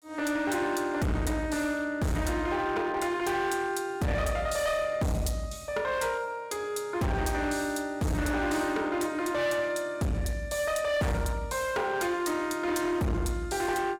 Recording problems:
distortion; hard clipping, uneven, signal-to-distortion ratio 6 dB

